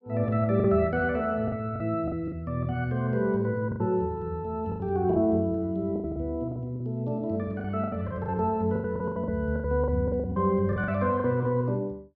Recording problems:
lost packets; 12% of the sound replaced, filled with the last packet

